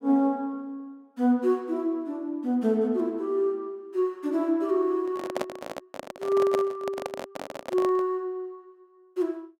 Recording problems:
microphone handling noise; from 5 to 8 s; peak +1 dB vs average level

